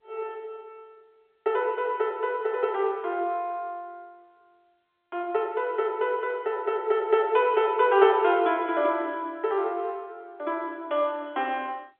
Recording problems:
telephone audio; 300 Hz to 3.5 kHz, G.711

